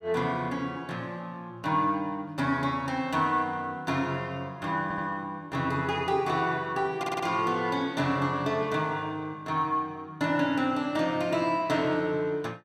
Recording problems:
audio stuttering; at 5 s and at 7 s

